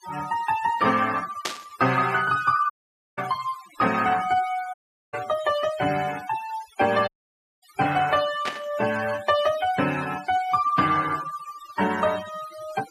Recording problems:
noise reduction artefacts; signal-to-artefact ratio 15 dB
static burst; at 1.5 s, at 3 s and at 8.5 s; peak +1 dB vs average level
audio cutting out; at 2.5 s, at 4.5 s and at 7 s for 0.5 s

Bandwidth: 14.5 kHz